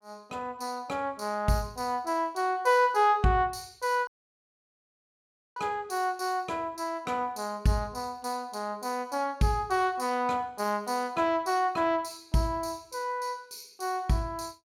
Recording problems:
audio cutting out; at 4 s for 1.5 s

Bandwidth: 16.5 kHz